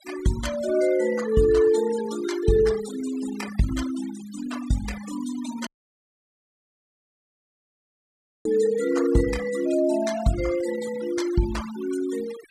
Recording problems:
noise reduction artefacts; signal-to-artefact ratio 14 dB
dropout; at 5.5 s for 3 s

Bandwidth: 14.5 kHz